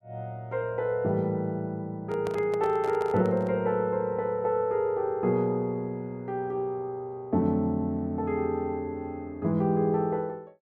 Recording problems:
handling noise; from 2 to 3.5 s; peak -5 dB vs average level

